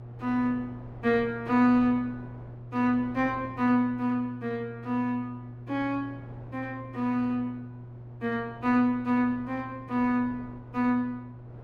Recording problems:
hum; 60 Hz, harmonics up to 360 Hz, SNR 16 dB
wind noise; below 610 Hz, SNR 23 dB

